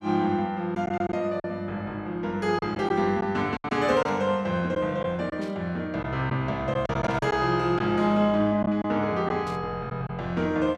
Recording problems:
lost packets; 5% of the sound replaced, filled with silence
burst of static; 4 times, first at 4 s; peak -13 dB vs average level

